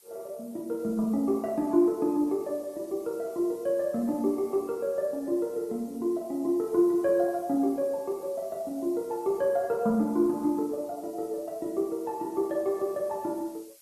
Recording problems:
lossy compression; Opus, log-spectral distance 4 dB
background hiss; SNR 26 dB

